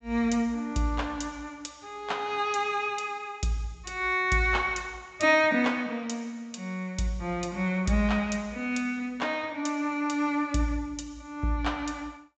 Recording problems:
treble missing; nothing above 8 kHz

